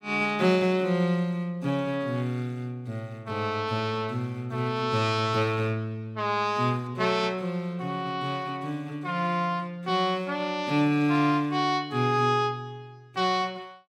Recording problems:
none

